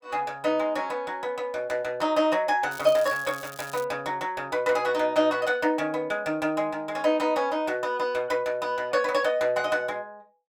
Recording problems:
crackling; from 2.5 to 4 s; loose cable, SNR 17 dB

